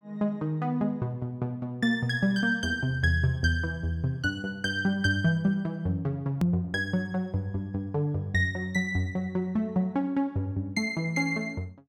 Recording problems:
click at an edit; at 6.5 s

